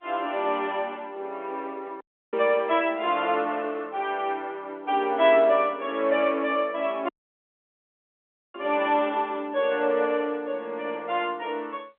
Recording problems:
telephone audio; 260 Hz to 3.5 kHz, G.711
audio cutting out; at 2 s and at 7 s for 1.5 s

